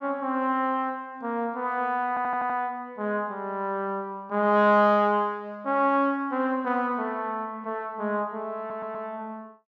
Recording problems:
audio stuttering; at 2 s and at 8.5 s

